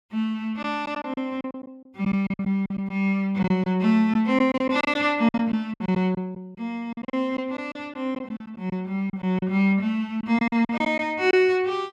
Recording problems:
lost packets; 11% of the sound replaced, filled with silence

